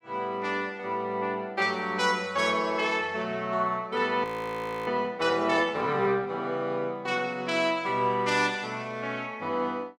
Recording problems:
frozen audio; at 4 s for 0.5 s

